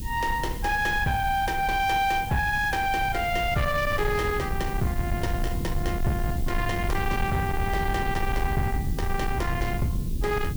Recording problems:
distortion; soft clipping, signal-to-distortion ratio 12 dB
hiss; SNR 16 dB
low-frequency rumble; below 130 Hz, SNR 5 dB

